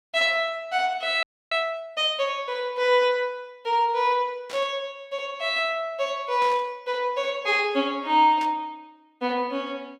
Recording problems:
audio freezing; at 1 s
static burst; at 4.5 s, at 6.5 s and at 8.5 s; peak -10 dB vs average level

